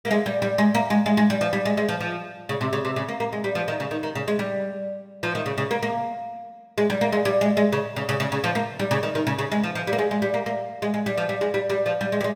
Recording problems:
none

